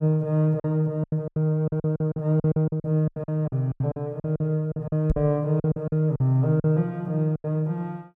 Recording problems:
packet loss; 16% of the sound replaced, filled with silence
knock on the microphone; at 5 s; peak +3 dB vs average level

